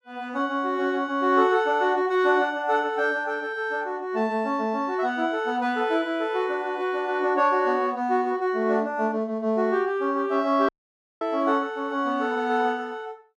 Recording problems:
audio cutting out; at 11 s for 0.5 s

